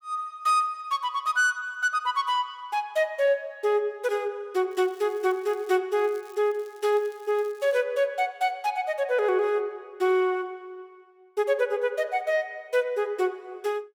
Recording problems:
crackling; from 4.5 to 6 s and from 6 to 8 s; loose cable, SNR 29 dB

